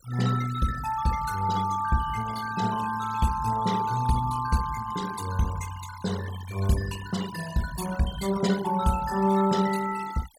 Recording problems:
noise reduction artefacts; signal-to-artefact ratio 13 dB

